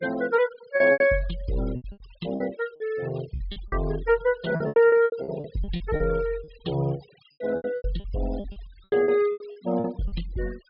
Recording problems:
treble missing; nothing above 5.5 kHz
denoising artefacts; signal-to-artefact ratio 20 dB
lost packets; 16% of the sound replaced, filled with repeated pitch periods

